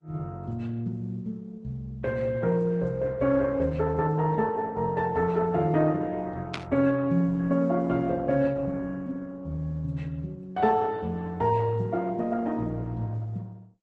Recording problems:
lossy compression; Opus, then Vorbis, log-spectral distance 2 dB
static burst; at 6.5 s; peak -3 dB vs average level

